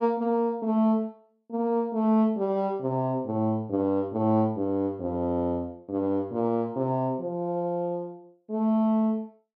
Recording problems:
none

